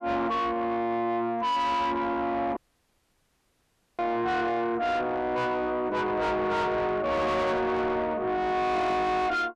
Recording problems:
distorted audio; soft clipping, signal-to-distortion ratio 7 dB
dropout; at 2.5 s for 1.5 s

